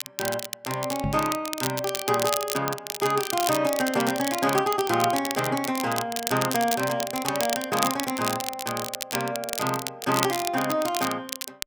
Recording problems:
crackle; vinyl, SNR 5 dB
microphone thump; at 1 s; peak +1 dB vs average level

